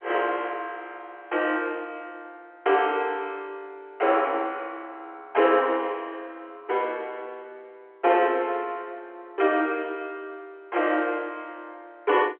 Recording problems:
phone line; 280 Hz to 3.3 kHz, G.711

